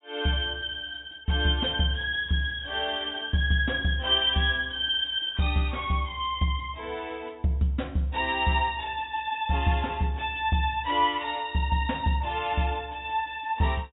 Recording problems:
low-pass filter; nothing above 4 kHz

